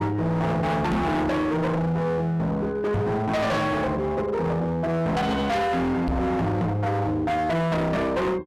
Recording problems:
distortion; hard clipping, signal-to-distortion ratio 6 dB
microphone thump; at 1 s, at 3 s and at 6 s; peak +3 dB vs average level

